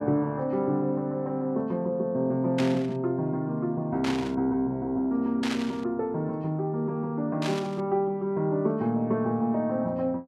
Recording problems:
burst of static; 4 times, first at 2.5 s; peak -2 dB vs average level

